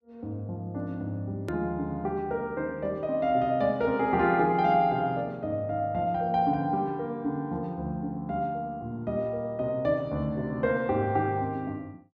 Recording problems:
hard cut with a click; at 1.5 s

